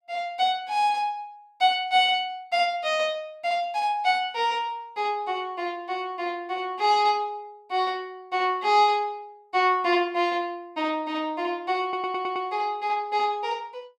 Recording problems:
stutter; at 12 s

